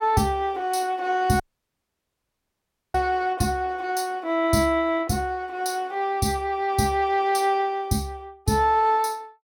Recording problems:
dropout; at 1.5 s for 1.5 s

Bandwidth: 16.5 kHz